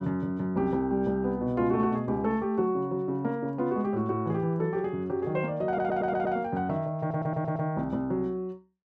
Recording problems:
audio stuttering; at 5.5 s and at 7 s

